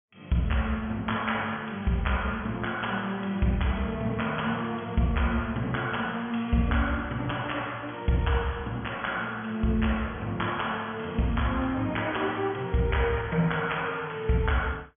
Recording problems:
treble missing; nothing above 3.4 kHz

